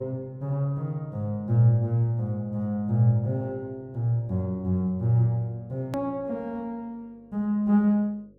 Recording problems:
hum; 50 Hz, harmonics up to 550 Hz, SNR 31 dB
edit click; at 6 s

